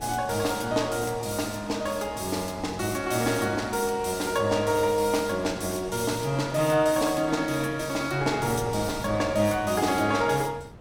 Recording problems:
wind on the microphone; below 390 Hz, SNR 18 dB

